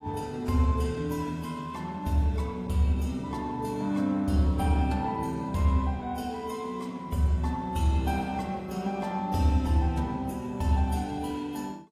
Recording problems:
codec artefacts; AAC, log-spectral distance 2 dB

